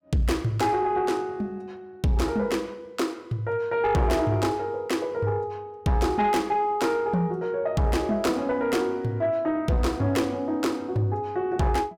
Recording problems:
distorted audio; soft clipping, signal-to-distortion ratio 12 dB

